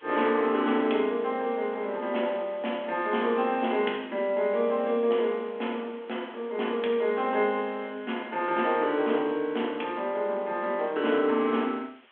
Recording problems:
telephone audio; 260 Hz to 3.6 kHz, G.726
hiss; SNR 27 dB

